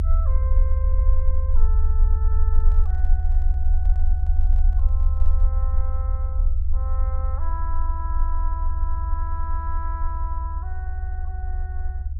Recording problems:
rumble; below 70 Hz, SNR -15 dB
handling noise; from 2.5 to 5.5 s; peak -8 dB vs average level

